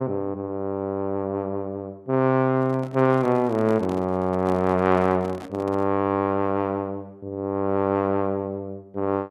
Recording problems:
handling noise; from 2.5 to 6 s; peak -10 dB vs average level

